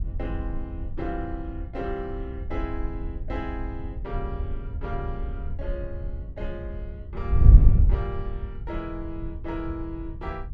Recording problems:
rumble; below 110 Hz, SNR 9 dB
wind on the microphone; below 84 Hz, SNR -9 dB

